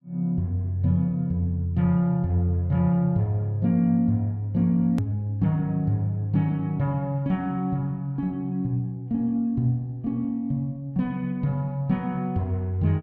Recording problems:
hard cut with a click; at 5 s

